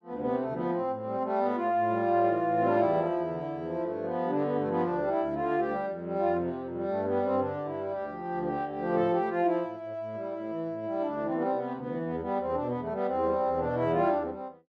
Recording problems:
none

